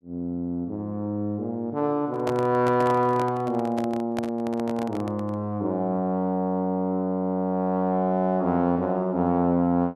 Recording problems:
handling noise; from 2 to 5.5 s; peak -3 dB vs average level

